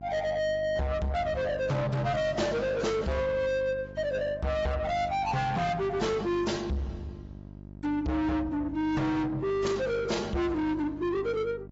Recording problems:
lossy compression; AAC, log-spectral distance 2 dB, nothing above 7.6 kHz
distorted audio; soft clipping, signal-to-distortion ratio 7 dB
hum; 50 Hz, harmonics up to 700 Hz, SNR 16 dB

